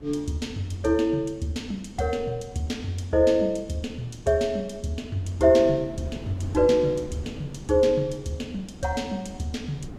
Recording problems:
wind noise; below 320 Hz, SNR 17 dB

